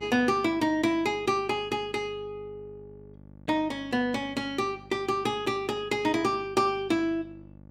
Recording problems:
hum; 50 Hz, harmonics up to 900 Hz, SNR 22 dB

